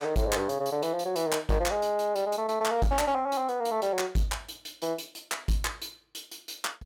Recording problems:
distorted audio; hard clipping, uneven, signal-to-distortion ratio 12 dB

